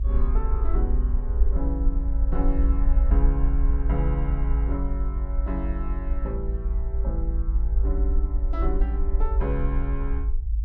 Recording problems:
rumble; below 54 Hz, SNR -7 dB

